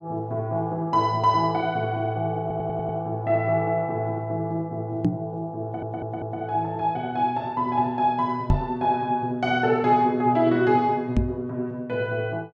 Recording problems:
stutter; at 2.5 s and at 5.5 s
microphone thump; at 5 s, at 8.5 s and at 11 s; peak +7 dB vs average level

